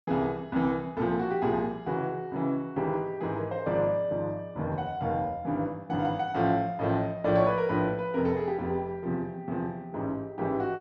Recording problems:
none

